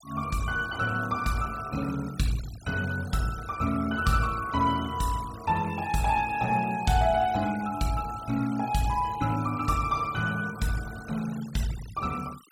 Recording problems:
denoising artefacts; signal-to-artefact ratio 17 dB

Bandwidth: 16.5 kHz